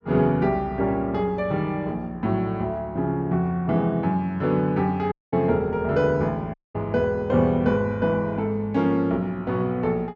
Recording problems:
audio cutting out; at 5 s and at 6.5 s

